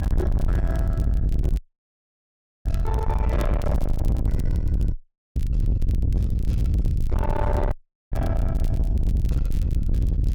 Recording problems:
distorted audio; soft clipping, signal-to-distortion ratio 7 dB
low-frequency rumble; below 100 Hz, SNR -6 dB
wind on the microphone; below 210 Hz, SNR 13 dB
crackling; vinyl, SNR 20 dB
audio cutting out; at 1.5 s for 1 s, at 5 s and at 7.5 s

